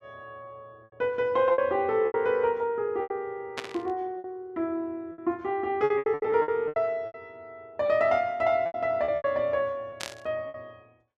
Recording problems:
packet loss; 11% of the sound replaced, filled with repeated pitch periods
static burst; at 3.5 s and at 10 s; peak -2 dB vs average level

